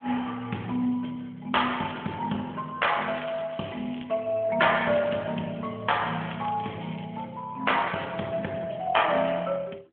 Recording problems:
telephone audio; 190 Hz to 3.4 kHz, AMR-NB
crackle; from 3 to 4 s and at 6.5 s; loose cable, SNR 21 dB

